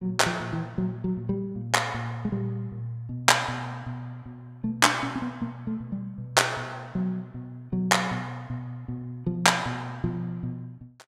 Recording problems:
none

